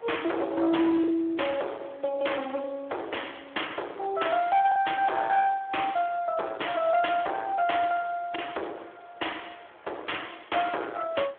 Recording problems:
telephone audio; 300 Hz to 3.4 kHz, Speex
distortion; hard clipping, signal-to-distortion ratio 9 dB
background hiss; SNR 25 dB
lost packets; 2% of the sound replaced, filled with the last packet

